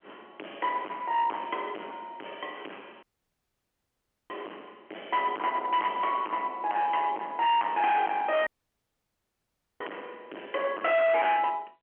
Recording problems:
telephone audio; 260 Hz to 3.2 kHz, G.711
distorted audio; hard clipping, signal-to-distortion ratio 6 dB
audio cutting out; at 3 s for 1.5 s and at 8.5 s for 1.5 s

